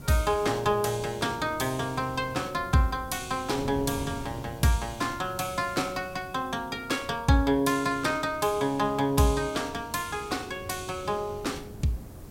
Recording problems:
background hiss; SNR 27 dB
wind on the microphone; below 280 Hz, SNR 16 dB

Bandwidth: 16 kHz